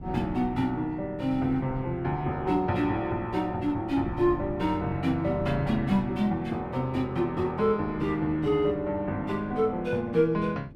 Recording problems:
wind on the microphone; below 210 Hz, SNR 16 dB

